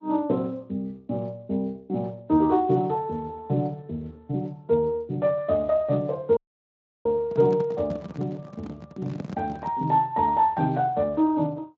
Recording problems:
lossy codec; Opus, then Speex, log-spectral distance 2 dB
dropout; at 6.5 s for 0.5 s
handling noise; from 7.5 to 10 s; peak -4 dB vs average level

